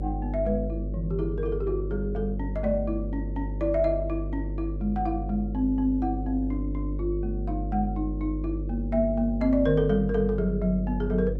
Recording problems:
hum; 50 Hz, harmonics up to 550 Hz, SNR 4 dB

